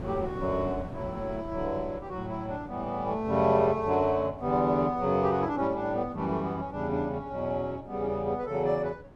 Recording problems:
wind on the microphone; below 350 Hz, SNR 16 dB

